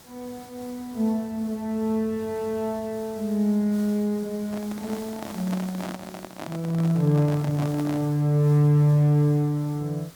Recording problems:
hiss; SNR 22 dB
handling noise; from 4.5 to 8 s; peak -7 dB vs average level

